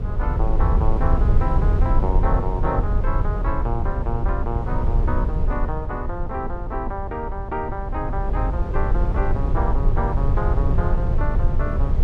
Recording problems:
low-frequency rumble; below 78 Hz, SNR -5 dB

